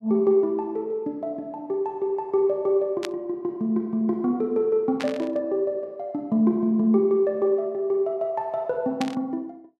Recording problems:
burst of static; at 3 s, at 5 s and at 9 s; peak -3 dB vs average level

